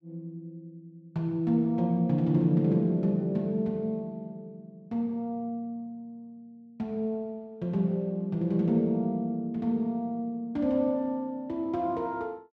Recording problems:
none

